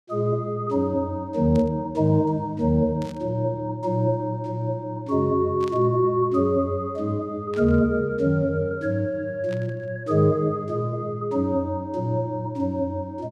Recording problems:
burst of static; 5 times, first at 1.5 s; peak -14 dB vs average level

